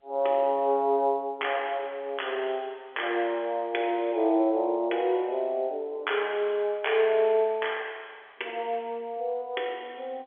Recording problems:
telephone audio; 300 Hz to 3.4 kHz, G.711

